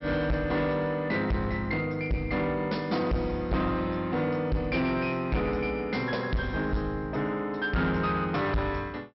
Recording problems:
low-pass filter; nothing above 5.5 kHz
distorted audio; soft clipping, signal-to-distortion ratio 7 dB

